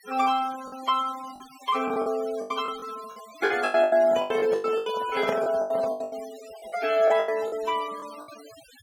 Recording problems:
noise reduction artefacts; signal-to-artefact ratio 18 dB
packet loss; 16% of the sound replaced, filled with the last packet
handling noise; from 4 to 6 s; peak 0 dB vs average level

